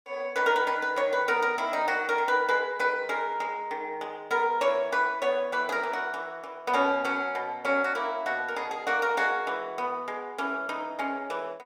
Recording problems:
none

